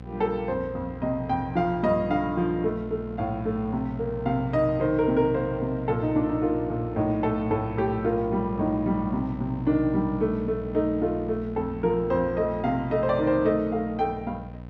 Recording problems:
hum; 60 Hz, harmonics up to 1 kHz, SNR 12 dB

